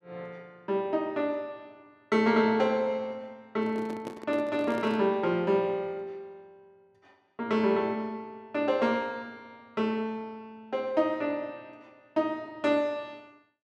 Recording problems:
handling noise; from 3.5 to 5 s; peak -5 dB vs average level

